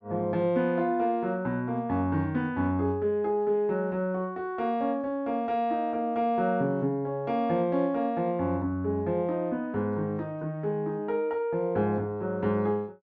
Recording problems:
low-pass filter; nothing above 7.3 kHz

